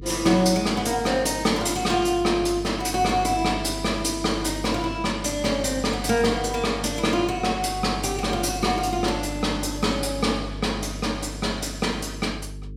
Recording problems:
hum; 50 Hz, harmonics up to 450 Hz, SNR 12 dB

